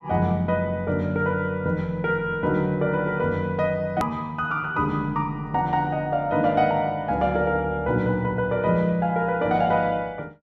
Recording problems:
click at an edit; at 4 s

